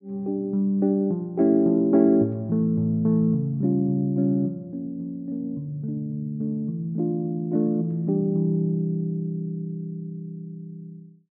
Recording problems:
none

